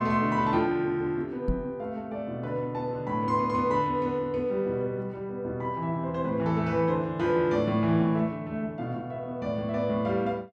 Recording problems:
microphone thump; at 1.5 s; peak +2 dB vs average level

